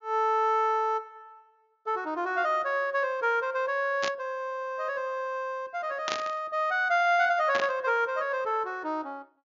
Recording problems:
treble missing; nothing above 7.1 kHz
static burst; at 4 s, at 6 s and at 7.5 s; peak 0 dB vs average level

